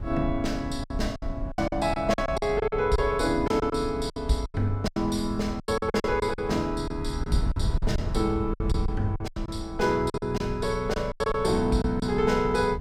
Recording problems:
wind noise; below 100 Hz, SNR 8 dB
packet loss; 13% of the sound replaced, filled with silence

